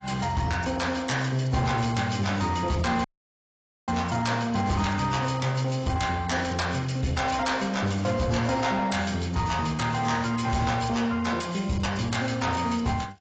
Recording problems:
lossy codec; AAC, log-spectral distance 5 dB, nothing above 7.6 kHz
distorted audio; soft clipping, signal-to-distortion ratio 12 dB
audio cutting out; at 3 s for 1 s

